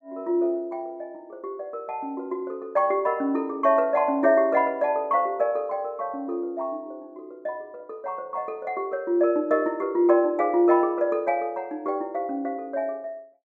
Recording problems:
none

